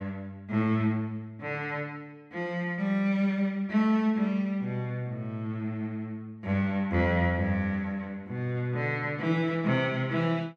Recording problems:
none

